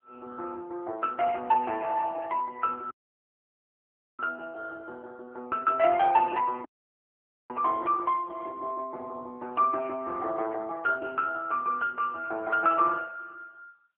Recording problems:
telephone audio; 300 Hz to 2.3 kHz, AMR-NB
audio cutting out; at 3 s for 1.5 s and at 6.5 s for 1 s

